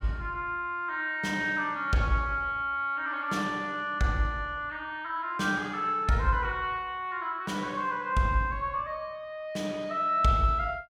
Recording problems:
none

